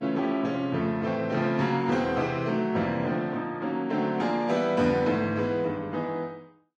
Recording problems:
lossy codec; Vorbis, log-spectral distance 2 dB, nothing above 10.7 kHz

